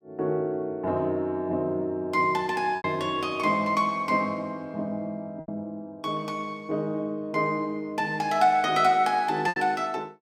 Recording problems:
packet loss; 2% of the sound replaced, filled with repeated pitch periods

